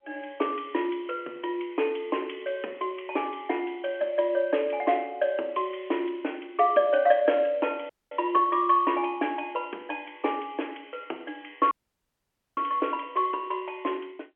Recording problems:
telephone audio; 300 Hz to 3.3 kHz, G.711
dropout; at 8 s and at 12 s for 1 s

